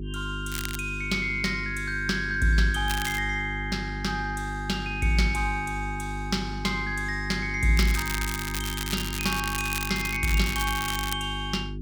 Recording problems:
hum; 50 Hz, harmonics up to 400 Hz, SNR 7 dB
crackle; 4 times, first at 0.5 s; loose cable, SNR 6 dB

